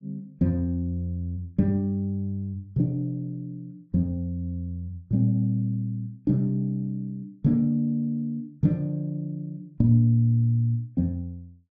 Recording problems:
none

